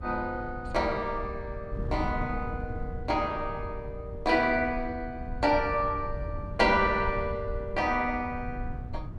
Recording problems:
wind noise; below 110 Hz, SNR 10 dB

